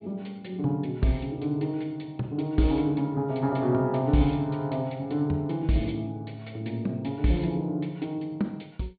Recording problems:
low-pass filter; nothing above 4.5 kHz

